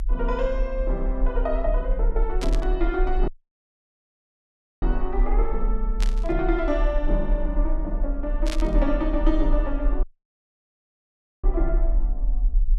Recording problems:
rumble; below 40 Hz, strongest tone 34 Hz, SNR -1 dB
static burst; at 2.5 s, at 6 s and at 8.5 s; peak 0 dB vs average level
dropout; at 3.5 s for 1.5 s and at 10 s for 1.5 s

